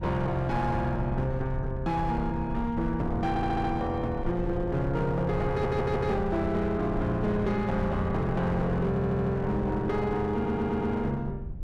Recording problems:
distortion; hard clipping, uneven, signal-to-distortion ratio 11 dB
low-frequency rumble; below 110 Hz, SNR 9 dB
audio stuttering; 4 times, first at 3.5 s

